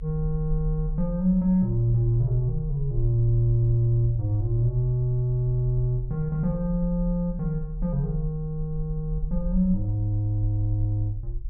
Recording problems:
rumble; below 42 Hz, strongest tone 40 Hz, SNR 10 dB

